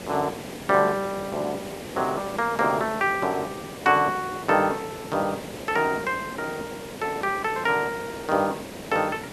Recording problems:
hiss; SNR 11 dB

